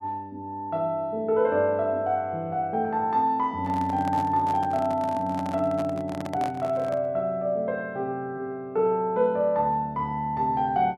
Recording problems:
microphone handling noise; from 3.5 to 7 s; peak -5 dB vs average level

